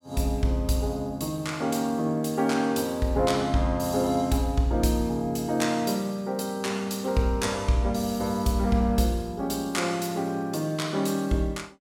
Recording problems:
none

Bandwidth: 17 kHz